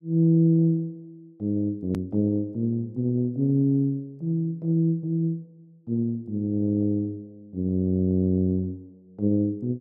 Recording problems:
hard cut with a click; at 2 s

